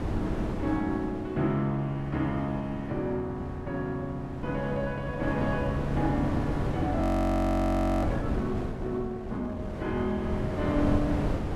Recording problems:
wind noise; below 370 Hz, SNR 3 dB
frozen audio; at 7 s for 1 s

